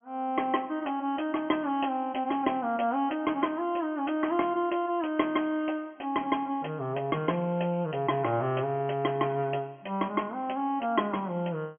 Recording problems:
treble cut off; nothing above 3.2 kHz

